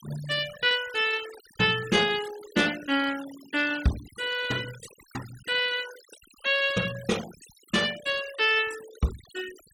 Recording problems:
noise reduction artefacts; signal-to-artefact ratio 16 dB

